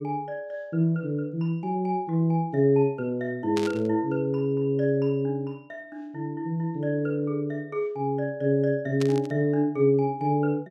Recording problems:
static burst; at 3.5 s and at 9 s; peak -4 dB vs average level

